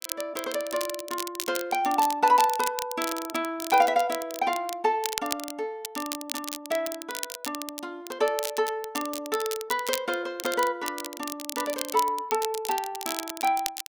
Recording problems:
crackle; vinyl, SNR 7 dB

